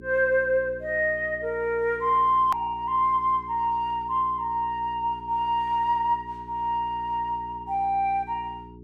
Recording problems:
electrical hum; 60 Hz, harmonics up to 420 Hz, SNR 20 dB
edit click; at 2.5 s

